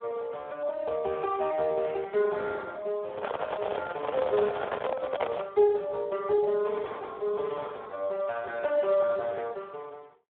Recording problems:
telephone audio; 340 Hz to 2 kHz, Speex
microphone handling noise; from 3 to 5.5 s; peak +5 dB vs average level

